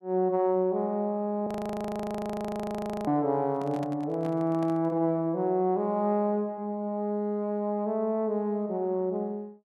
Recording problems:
frozen audio; at 1.5 s for 1.5 s
handling noise; from 3.5 to 5 s; peak -9 dB vs average level

